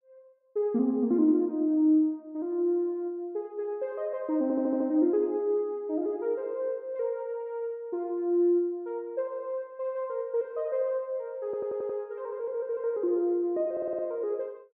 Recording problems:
stutter; at 4.5 s, at 11 s and at 14 s

